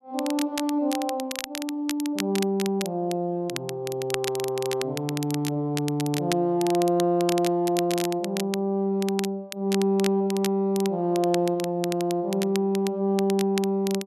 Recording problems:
crackle; vinyl, SNR 10 dB

